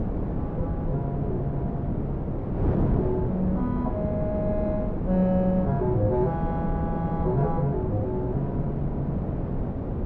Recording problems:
wind on the microphone; below 330 Hz, SNR 0 dB

